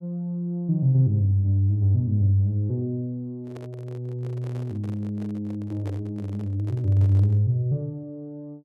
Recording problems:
microphone handling noise; from 3.5 to 7.5 s; peak -12 dB vs average level

